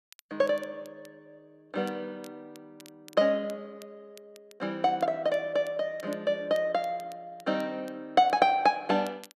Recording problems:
crackle; vinyl, SNR 28 dB

